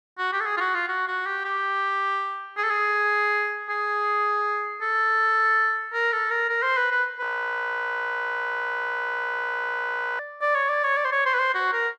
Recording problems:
frozen audio; at 7 s for 3 s

